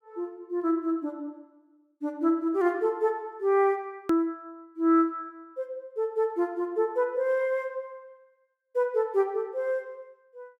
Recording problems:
click at an edit; at 4 s

